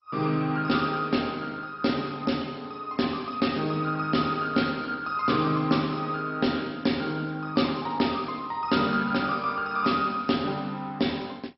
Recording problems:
lossy codec; MP2, log-spectral distance 5 dB, nothing above 5.5 kHz

